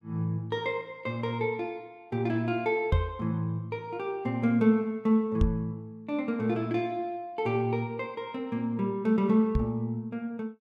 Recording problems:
knock on the microphone; at 3 s, at 5.5 s and at 9.5 s; peak +7 dB vs average level

